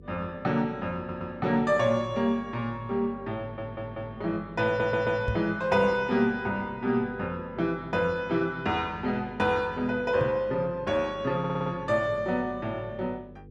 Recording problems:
hum; 50 Hz, harmonics up to 500 Hz, SNR 21 dB
stutter; 4 times, first at 1 s
microphone thump; at 5.5 s and at 10 s; peak +1 dB vs average level

